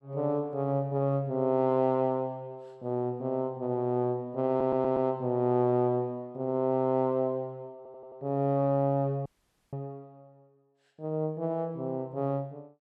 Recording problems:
stutter; at 4.5 s and at 8 s
dropout; at 9.5 s

